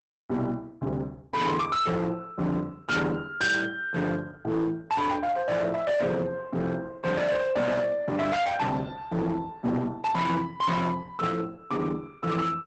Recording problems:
lossy codec; Opus, log-spectral distance 3 dB, nothing above 8 kHz
distortion; hard clipping, uneven, signal-to-distortion ratio 8 dB

